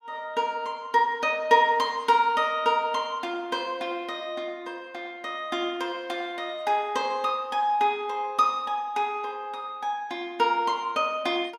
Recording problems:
none

